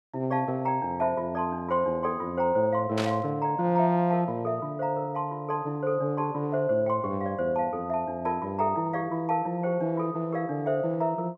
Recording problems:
burst of static; at 3 s; peak -2 dB vs average level

